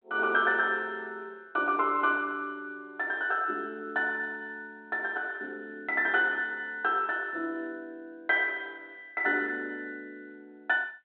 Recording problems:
phone line; 280 Hz to 3.6 kHz, G.726

